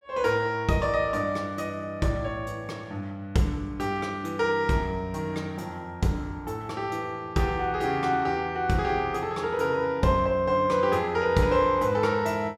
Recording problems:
none

